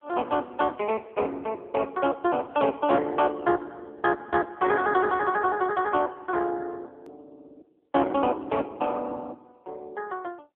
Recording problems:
telephone audio; 240 Hz to 3.3 kHz, AMR-NB
click at an edit; at 7 s

